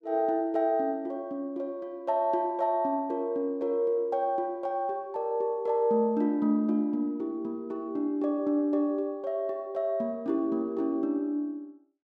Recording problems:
none

